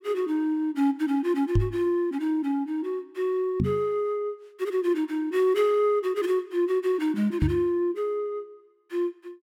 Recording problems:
knock on the microphone; at 1.5 s, at 3.5 s and at 7.5 s; peak +6 dB vs average level

